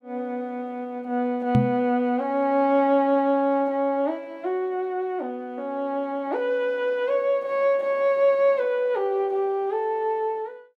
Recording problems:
microphone bump; at 1.5 s; peak +7 dB vs average level

